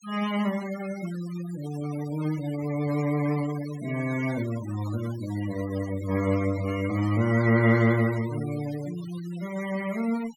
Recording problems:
denoising artefacts; signal-to-artefact ratio 16 dB

